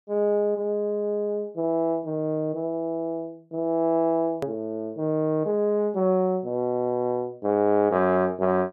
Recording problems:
hard cut with a click; at 4.5 s

